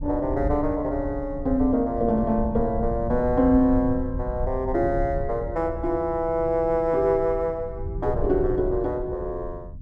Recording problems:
rumble; below 98 Hz, SNR 9 dB

